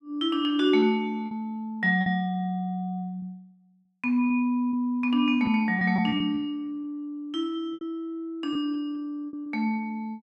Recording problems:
lost packets; 7% of the sound replaced, filled with repeated pitch periods

